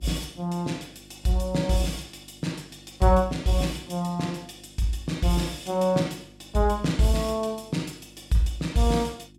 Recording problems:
hum; 50 Hz, harmonics up to 350 Hz, SNR 25 dB

